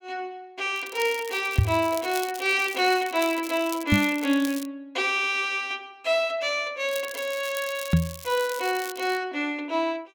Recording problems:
crackle; from 1 to 4.5 s and from 7 to 9 s; loose cable, SNR 13 dB
microphone thump; at 1.5 s, at 4 s and at 8 s; peak +9 dB vs average level

